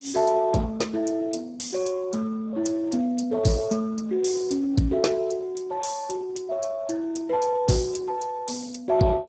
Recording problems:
codec artefacts; Speex, log-spectral distance 5 dB, nothing above 7.8 kHz

